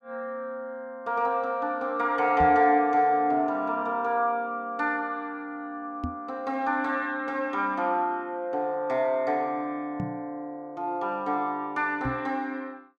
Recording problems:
knock on the microphone; 4 times, first at 2.5 s; peak -1 dB vs average level

